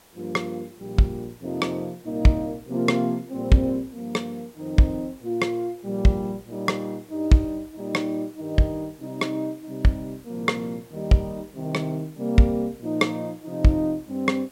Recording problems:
hiss; slope -3 dB per octave, SNR 28 dB

